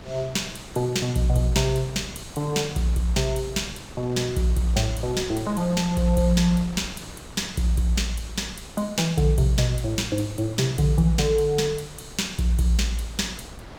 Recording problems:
wind on the microphone; below 980 Hz, SNR 17 dB

